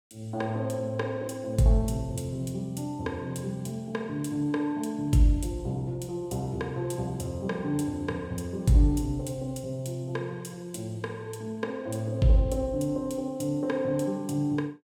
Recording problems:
none

